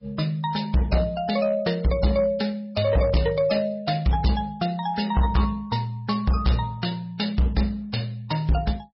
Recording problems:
lossy compression; MP3, log-spectral distance 3 dB, nothing above 5 kHz
distortion; hard clipping, uneven, signal-to-distortion ratio 11 dB

